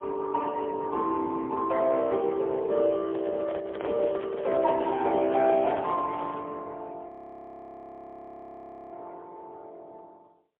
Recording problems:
phone line; 240 Hz to 3.6 kHz, AMR-NB, then MP3
handling noise; from 3 to 6.5 s; peak -3 dB vs average level
frozen audio; at 7 s for 2 s

